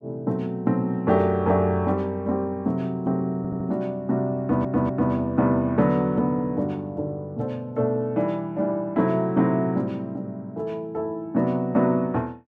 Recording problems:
audio stuttering; at 3.5 s and at 4.5 s

